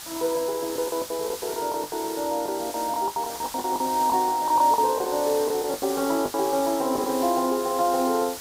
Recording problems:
background hiss; slope +1 dB per octave, SNR 10 dB
lost packets; 13% of the sound replaced, filled with the last packet

